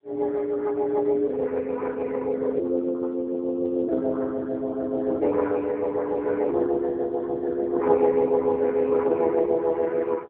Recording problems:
telephone audio; 240 Hz to 2.5 kHz, AMR-NB

